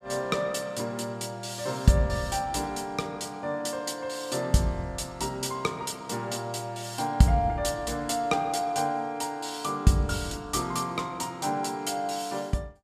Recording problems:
none

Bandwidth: 14.5 kHz